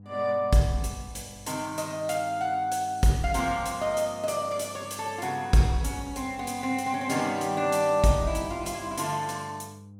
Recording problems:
hum; 50 Hz, harmonics up to 500 Hz, SNR 21 dB

